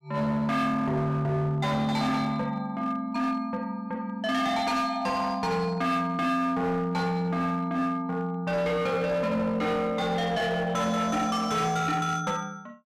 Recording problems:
distorted audio; hard clipping, uneven, signal-to-distortion ratio 10 dB

